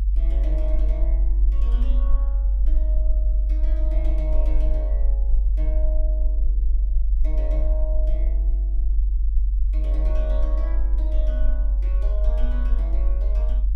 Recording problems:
rumble; below 48 Hz, strongest tone 48 Hz, SNR -16 dB

